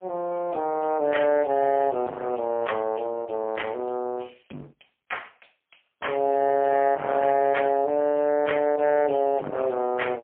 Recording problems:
phone line; 130 Hz to 2.9 kHz, AMR-NB, then MP3
distortion; hard clipping, signal-to-distortion ratio 9 dB

